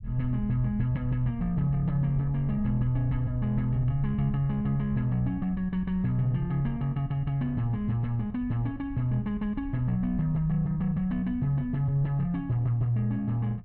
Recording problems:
low-frequency rumble; below 70 Hz, SNR 14 dB

